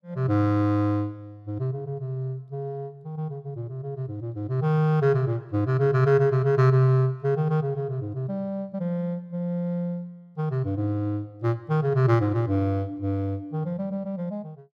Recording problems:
none

